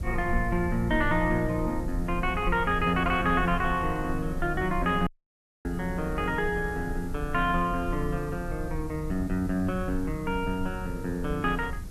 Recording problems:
hiss; slope -1 dB per octave, SNR 25 dB
rumble; below 74 Hz, SNR 9 dB
audio cutting out; at 5 s for 0.5 s

